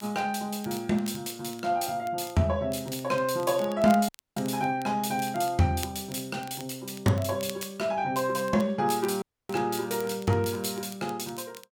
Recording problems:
crackle; vinyl, SNR 19 dB
audio cutting out; at 4 s and at 9 s

